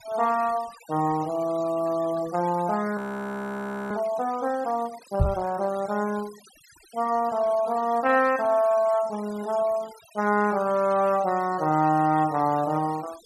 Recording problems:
noise reduction artefacts; signal-to-artefact ratio 21 dB
frozen audio; at 3 s for 1 s
microphone bump; at 5 s; peak +6 dB vs average level

